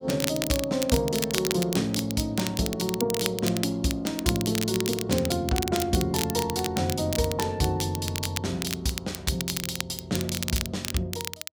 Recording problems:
crackling; vinyl, SNR 5 dB

